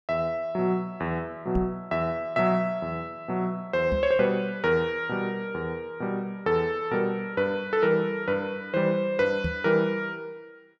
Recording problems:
microphone thump; at 1.5 s, at 4 s and at 9.5 s; peak +1 dB vs average level

